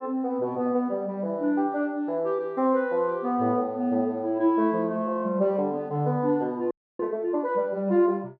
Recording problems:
audio freezing; at 6.5 s

